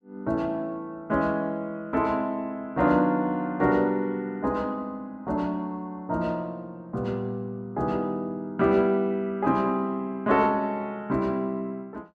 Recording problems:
none

